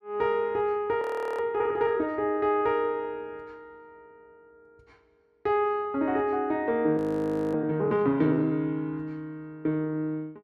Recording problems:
audio freezing; at 1 s and at 7 s for 0.5 s

